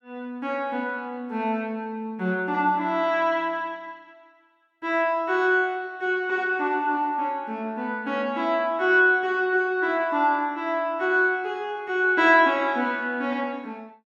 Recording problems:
none

